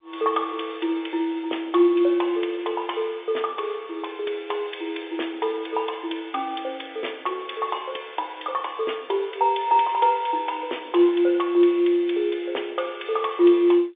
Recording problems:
phone line; 280 Hz to 3.6 kHz, G.711

